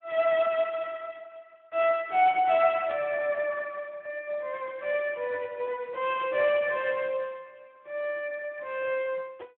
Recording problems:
phone line; 300 Hz to 3.5 kHz, Speex
burst of static; at 3 s; peak -14 dB vs average level

